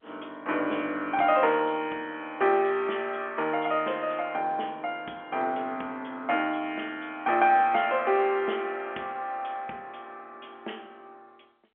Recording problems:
telephone audio; 260 Hz to 3.4 kHz, G.711

